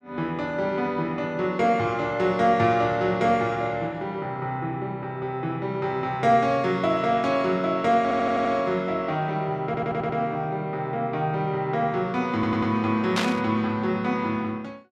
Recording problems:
stutter; at 8 s, at 9.5 s and at 12 s
static burst; at 13 s; peak +3 dB vs average level

